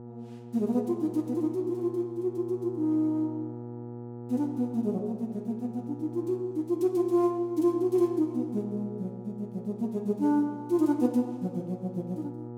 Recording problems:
hum; 60 Hz, harmonics up to 960 Hz, SNR 13 dB

